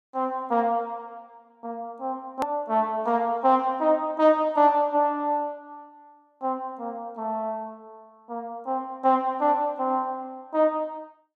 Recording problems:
hard cut with a click; at 2.5 s

